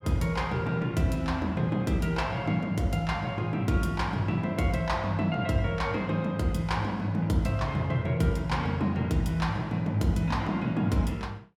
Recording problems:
none

